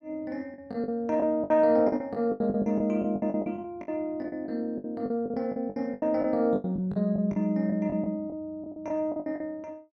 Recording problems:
lost packets; 17% of the sound replaced, filled with the last packet

